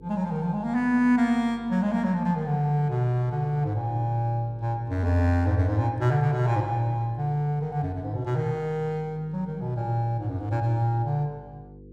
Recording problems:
electrical hum; 50 Hz, harmonics up to 500 Hz, SNR 22 dB

